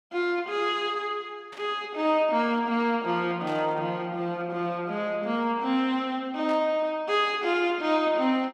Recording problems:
burst of static; at 1.5 s, at 3.5 s and at 6.5 s; peak -13 dB vs average level

